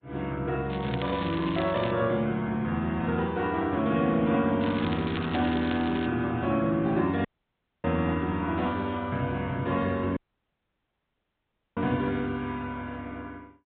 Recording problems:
treble cut off; nothing above 3.7 kHz
lossy codec; Opus, log-spectral distance 3 dB
crackle; from 0.5 to 2 s and from 4.5 to 6 s; loose cable, SNR 13 dB
audio cutting out; at 7.5 s for 0.5 s and at 10 s for 1.5 s

